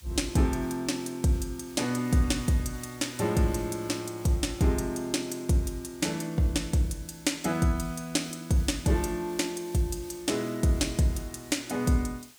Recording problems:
background hiss; slope +1 dB per octave, SNR 21 dB

